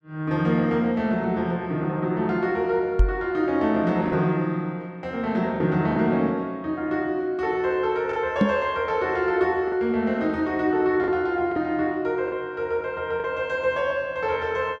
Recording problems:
lost packets; 2% of the sound replaced, filled with the last packet
microphone thump; at 3 s and at 8.5 s; peak +7 dB vs average level

